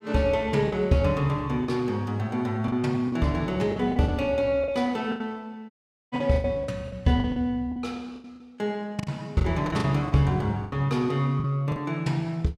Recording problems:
packet loss; 11% of the sound replaced, filled with the last packet
audio cutting out; at 5.5 s

